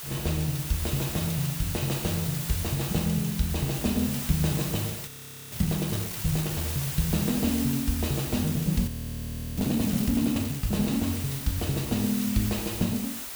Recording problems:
hiss; slope 0 dB per octave, SNR 6 dB
frozen audio; at 5 s and at 9 s for 0.5 s

